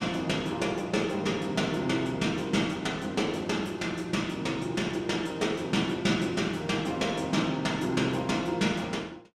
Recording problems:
none

